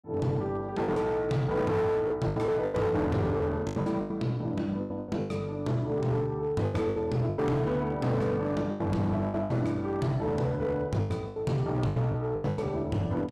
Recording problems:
distorted audio; hard clipping, signal-to-distortion ratio 11 dB
packet loss; 12% of the sound replaced, filled with the last packet

